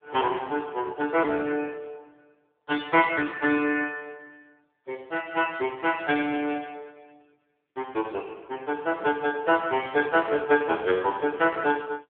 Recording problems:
telephone audio; 280 Hz to 3.5 kHz, AMR-NB

